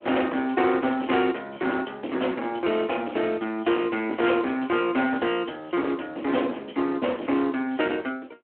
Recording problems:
telephone audio; 220 Hz to 3.2 kHz, Speex
distortion; hard clipping, uneven, signal-to-distortion ratio 10 dB

